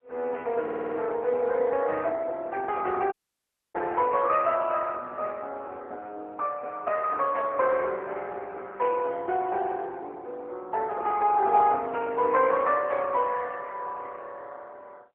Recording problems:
telephone audio; 320 Hz to 3.3 kHz, AMR-NB
stutter; at 0.5 s
dropout; at 3 s for 0.5 s

